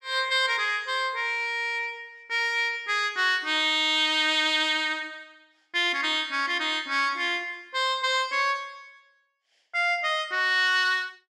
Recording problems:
none

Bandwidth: 14.5 kHz